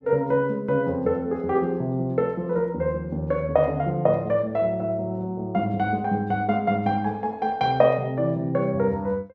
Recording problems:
none

